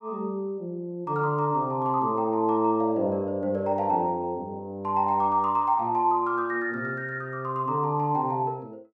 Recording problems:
none

